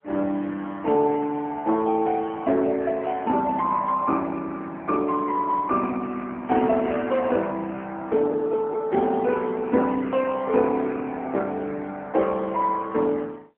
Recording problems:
phone line; 220 Hz to 3.6 kHz, AMR-NB

